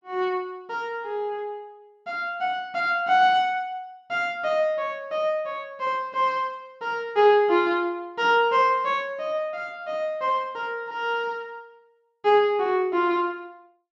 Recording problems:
none

